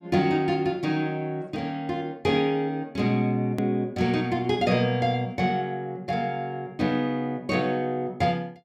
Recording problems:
click at an edit; at 3.5 s

